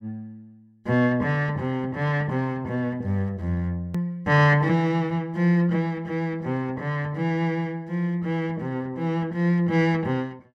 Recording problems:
hard cut with a click; at 4 s

